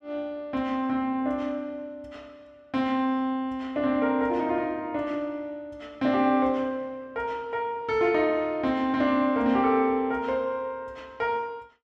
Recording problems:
none

